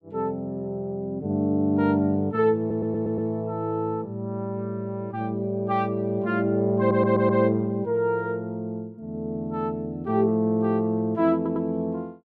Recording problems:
audio stuttering; at 2.5 s, at 7 s and at 11 s

